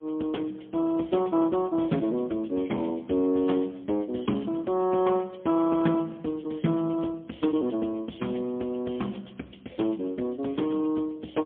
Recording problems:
telephone audio; 150 Hz to 3.4 kHz, AMR-NB, then MP3

